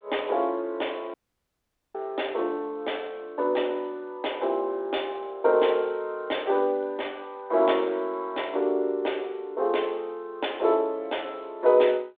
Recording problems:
telephone audio; 320 Hz to 3.6 kHz, G.726
dropout; at 1 s for 1 s

